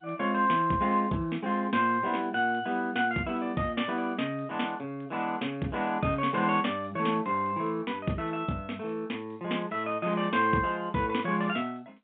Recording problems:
phone line; 130 Hz to 3.7 kHz, G.711

